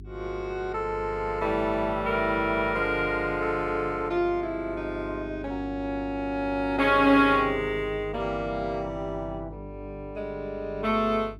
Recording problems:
hum; 50 Hz, harmonics up to 400 Hz, SNR 16 dB

